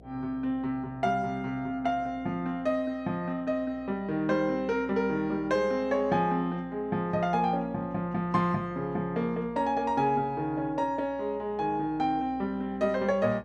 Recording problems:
hum; 60 Hz, harmonics up to 720 Hz, SNR 23 dB

